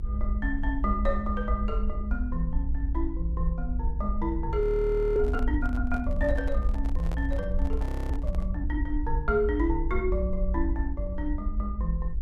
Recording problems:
electrical hum; 50 Hz, harmonics up to 1 kHz, SNR 22 dB
low-frequency rumble; below 58 Hz, SNR 0 dB
microphone handling noise; from 4.5 to 8.5 s; peak -6 dB vs average level
frozen audio; at 4.5 s for 0.5 s and at 8 s

